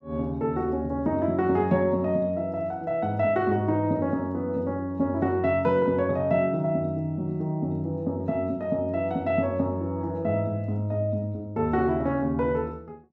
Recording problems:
none

